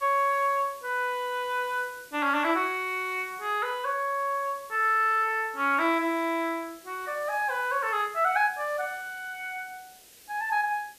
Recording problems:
hiss; SNR 22 dB

